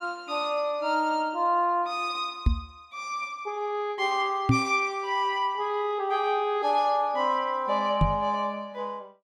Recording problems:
knock on the microphone; at 2.5 s, at 4.5 s and at 8 s; peak +8 dB vs average level

